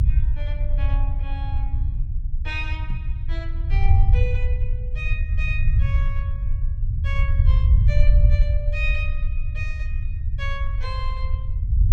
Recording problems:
low-frequency rumble; below 76 Hz, SNR -11 dB
knock on the microphone; at 3 s; peak +5 dB vs average level

